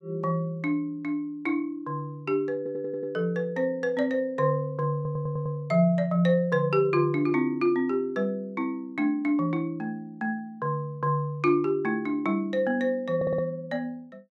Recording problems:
stutter; at 2.5 s, at 5 s and at 13 s

